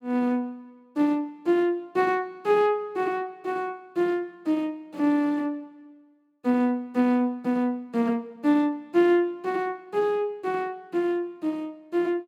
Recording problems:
none

